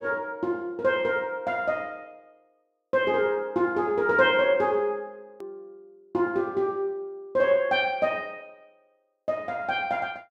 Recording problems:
hard cut with a click; at 5.5 s

